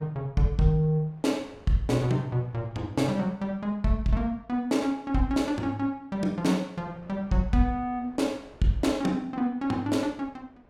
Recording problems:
wind on the microphone; below 740 Hz, SNR 27 dB

